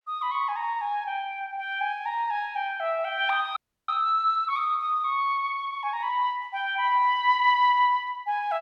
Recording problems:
audio freezing; at 3.5 s

